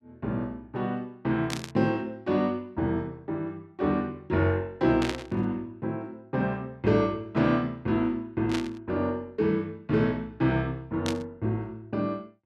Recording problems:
burst of static; 4 times, first at 1.5 s; peak 0 dB vs average level

